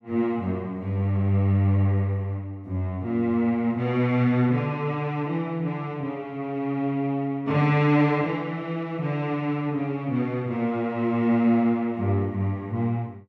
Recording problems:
none

